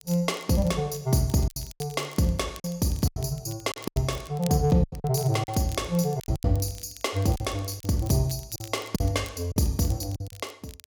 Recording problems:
crackling; vinyl, SNR 20 dB
lost packets; 9% of the sound replaced, filled with silence

